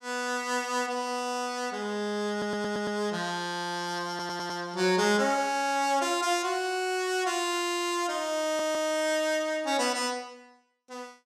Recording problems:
audio stuttering; at 2.5 s, at 4 s and at 8.5 s

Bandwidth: 14.5 kHz